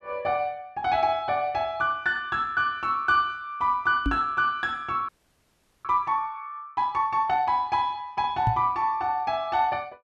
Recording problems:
microphone bump; at 4 s and at 8.5 s; peak +3 dB vs average level
frozen audio; at 5 s for 1 s

